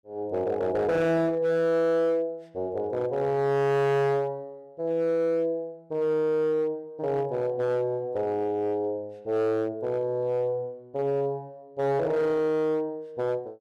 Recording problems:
distortion; hard clipping, uneven, signal-to-distortion ratio 11 dB

